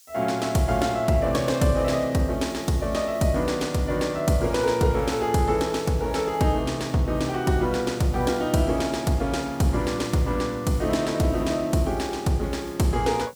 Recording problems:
hiss; SNR 27 dB

